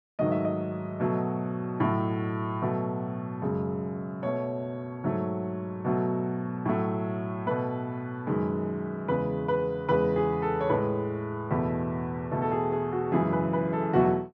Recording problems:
none

